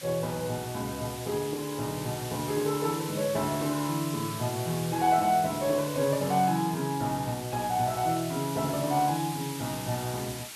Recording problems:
hiss; slope +1 dB per octave, SNR 10 dB

